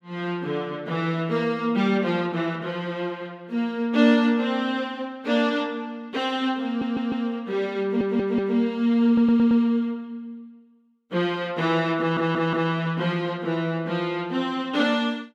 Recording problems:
stutter; 4 times, first at 6.5 s

